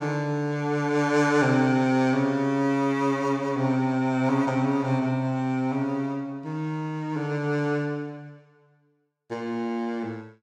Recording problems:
none

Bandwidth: 16 kHz